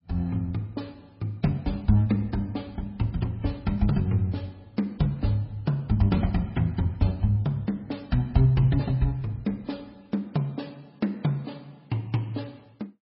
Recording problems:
lossy compression; MP3, log-spectral distance 2 dB, nothing above 4.8 kHz

